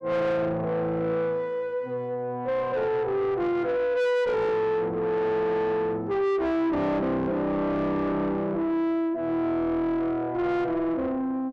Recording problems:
distortion; soft clipping, signal-to-distortion ratio 8 dB

